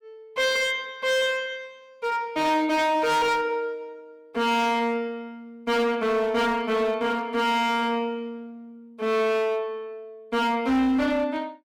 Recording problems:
distorted audio; hard clipping, signal-to-distortion ratio 8 dB

